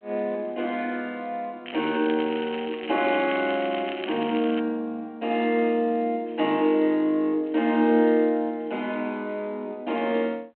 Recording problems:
telephone audio; 220 Hz to 3.3 kHz, G.726
crackling; from 1.5 to 4.5 s; loose cable, SNR 13 dB

